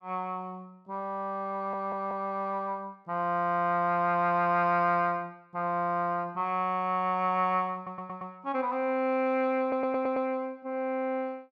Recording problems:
stutter; at 1.5 s, at 8 s and at 9.5 s

